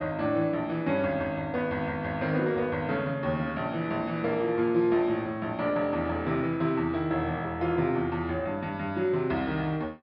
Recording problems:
low-pass filter; nothing above 5.5 kHz

